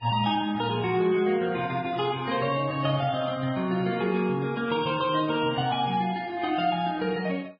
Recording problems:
lossy codec; MP3, then Vorbis, log-spectral distance 3 dB, nothing above 5 kHz

